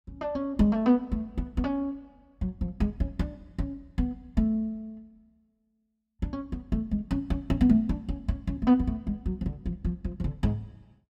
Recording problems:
none

